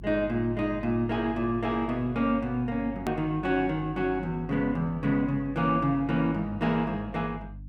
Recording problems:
hum; 50 Hz, harmonics up to 300 Hz, SNR 16 dB
click at an edit; at 3 s

